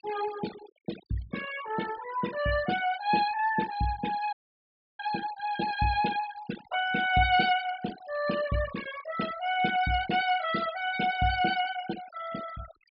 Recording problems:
treble cut off; nothing above 5.5 kHz
denoising artefacts; signal-to-artefact ratio 13 dB
dropout; at 4.5 s for 0.5 s

